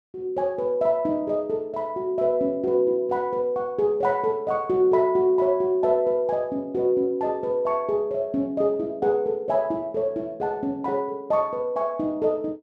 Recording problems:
none

